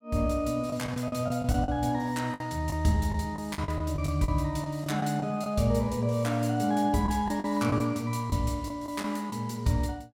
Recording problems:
packet loss; 8% of the sound replaced, filled with the last packet

